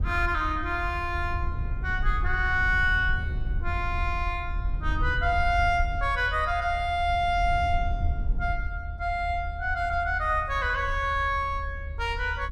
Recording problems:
low-frequency rumble; below 76 Hz, SNR 6 dB

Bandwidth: 14.5 kHz